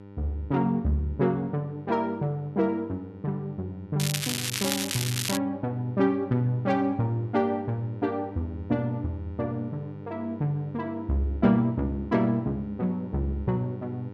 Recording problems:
mains hum; 50 Hz, harmonics up to 1.9 kHz, SNR 15 dB
crackle; from 4 to 5.5 s; loose cable, SNR 1 dB

